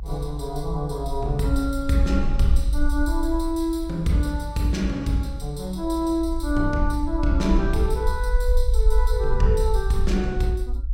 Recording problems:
low-frequency rumble; below 54 Hz, SNR 3 dB

